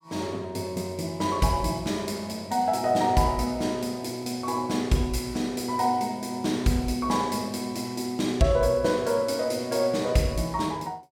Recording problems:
none

